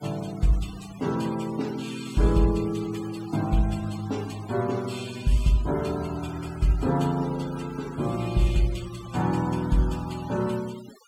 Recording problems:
denoising artefacts; signal-to-artefact ratio 18 dB

